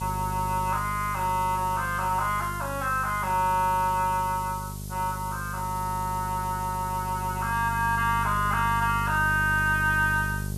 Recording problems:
electrical hum; 50 Hz, harmonics up to 600 Hz, SNR 9 dB
hiss; slope +6 dB per octave, SNR 16 dB

